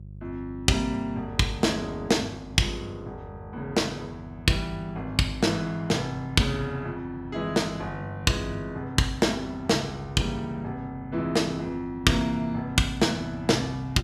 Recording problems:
hum; 50 Hz, harmonics up to 400 Hz, SNR 17 dB

